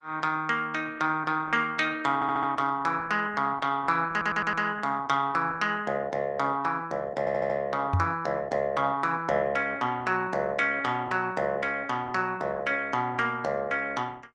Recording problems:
lossy compression; Opus, log-spectral distance 3 dB
audio stuttering; at 2 s, at 4 s and at 7 s
knock on the microphone; at 8 s; peak +7 dB vs average level

